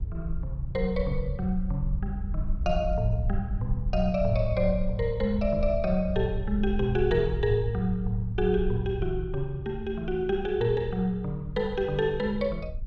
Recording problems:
wind on the microphone; below 66 Hz, SNR 6 dB

